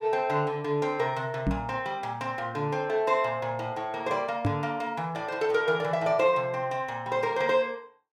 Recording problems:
microphone thump; at 1.5 s and at 4.5 s; peak +5 dB vs average level

